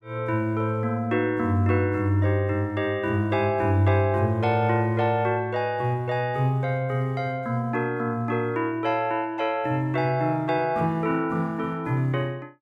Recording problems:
none

